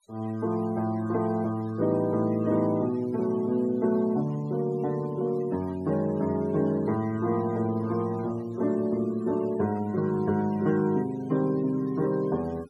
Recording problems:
noise reduction artefacts; signal-to-artefact ratio 23 dB

